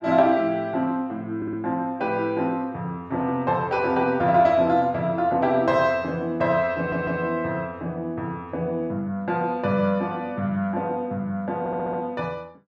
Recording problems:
stutter; at 1.5 s, at 7 s and at 12 s

